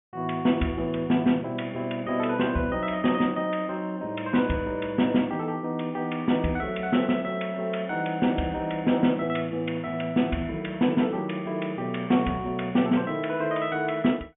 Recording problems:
treble missing; nothing above 3.5 kHz

